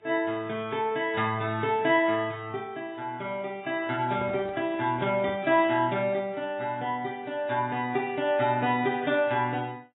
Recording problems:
lossy compression; AAC, log-spectral distance 2 dB, nothing above 3.4 kHz
handling noise; from 4 to 5.5 s; peak -11 dB vs average level

